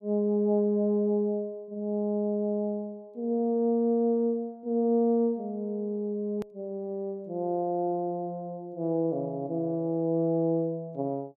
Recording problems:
edit click; at 6.5 s

